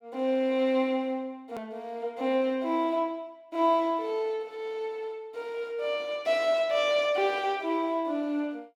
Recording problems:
click at an edit; at 1.5 s

